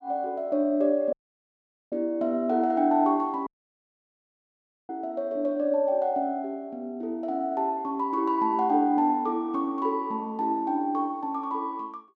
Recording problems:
dropout; at 1 s for 1 s and at 3.5 s for 1.5 s

